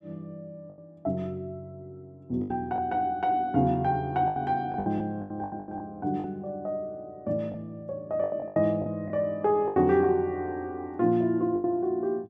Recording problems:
packet loss; 9% of the sound replaced, filled with the last packet

